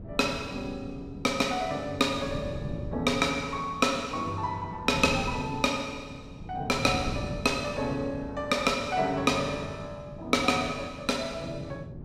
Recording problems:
wind on the microphone; below 250 Hz, SNR 12 dB

